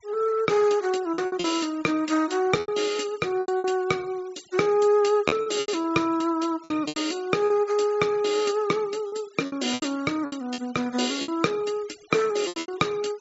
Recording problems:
treble cut off; nothing above 8 kHz
noise reduction artefacts; signal-to-artefact ratio 23 dB
packet loss; 10% of the sound replaced, filled with repeated pitch periods

